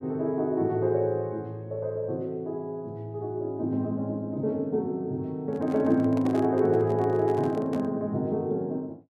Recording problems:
handling noise; from 5.5 to 8 s; peak -6 dB vs average level

